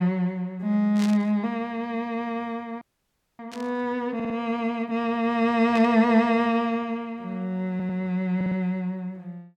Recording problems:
static burst; at 1 s, at 3.5 s and at 5.5 s; peak -7 dB vs average level
frozen audio; at 3 s for 0.5 s
stutter; at 4 s, at 7.5 s and at 8.5 s

